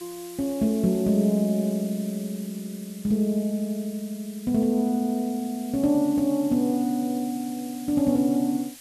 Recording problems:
hiss; slope +3 dB per octave, SNR 19 dB

